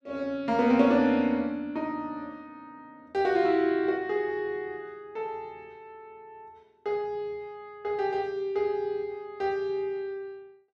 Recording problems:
none

